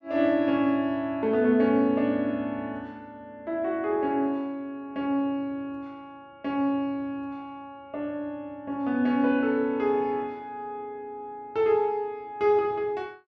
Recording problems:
none

